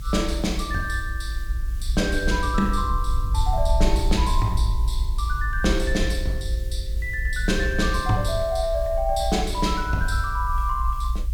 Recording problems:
background hiss; SNR 23 dB
rumble; below 58 Hz, SNR 2 dB

